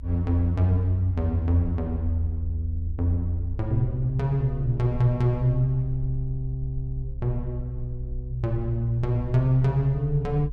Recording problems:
rumble; below 60 Hz, SNR 11 dB

